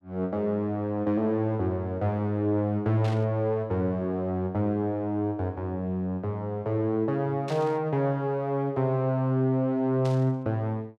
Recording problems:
static burst; at 3 s, at 7.5 s and at 10 s; peak -10 dB vs average level

